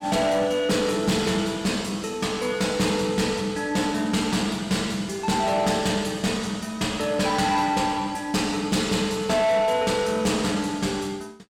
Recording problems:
distorted audio; soft clipping, signal-to-distortion ratio 12 dB

